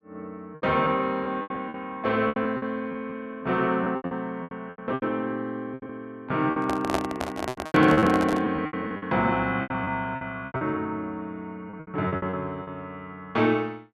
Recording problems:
packet loss; 14% of the sound replaced, filled with repeated pitch periods
microphone handling noise; from 6.5 to 8.5 s; peak +5 dB vs average level

